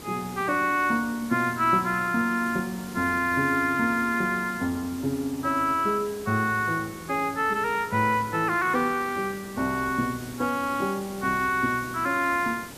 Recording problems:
background hiss; SNR 16 dB

